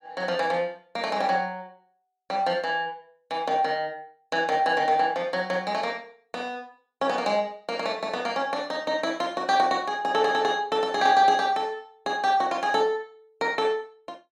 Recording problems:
none

